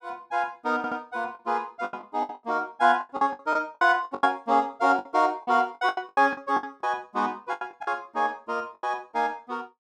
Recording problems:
lost packets; 13% of the sound replaced, filled with the last packet
audio stuttering; at 1 s

